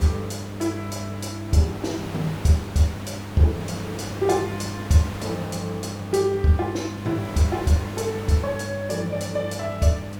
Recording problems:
mains hum; 50 Hz, harmonics up to 800 Hz, SNR 10 dB
background hiss; slope -5 dB per octave, SNR 13 dB

